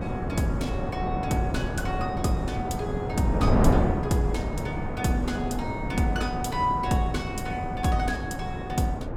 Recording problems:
wind noise; below 430 Hz, SNR 0 dB

